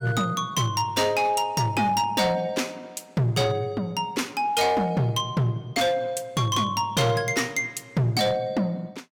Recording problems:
distorted audio; hard clipping, signal-to-distortion ratio 11 dB

